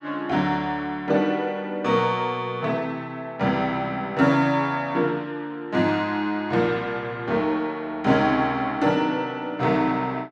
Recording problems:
none

